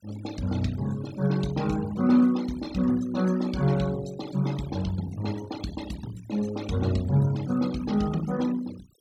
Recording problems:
denoising artefacts; signal-to-artefact ratio 17 dB

